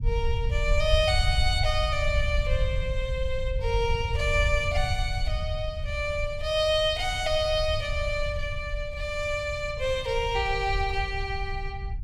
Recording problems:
low-frequency rumble; below 80 Hz, SNR 4 dB

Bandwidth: 16 kHz